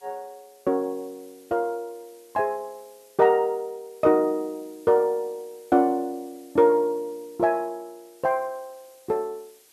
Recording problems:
background hiss; SNR 29 dB

